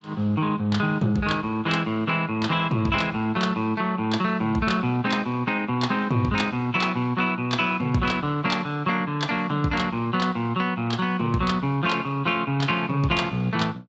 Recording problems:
lossy codec; Speex, log-spectral distance 3 dB, nothing above 7.3 kHz

